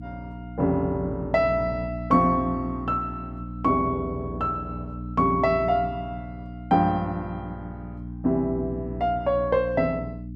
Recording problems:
electrical hum; 60 Hz, harmonics up to 300 Hz, SNR 11 dB

